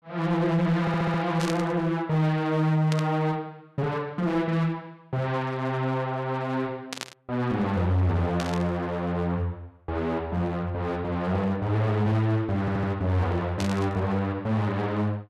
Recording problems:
distorted audio; hard clipping, uneven, signal-to-distortion ratio 11 dB
audio stuttering; at 1 s and at 13 s
static burst; 5 times, first at 1.5 s; peak -1 dB vs average level

